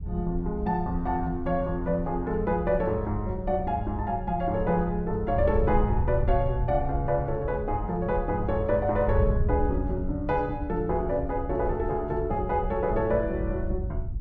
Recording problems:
wind noise; below 90 Hz, SNR 6 dB

